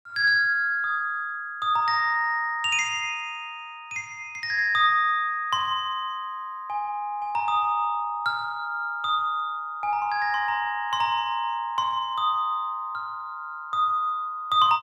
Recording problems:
none

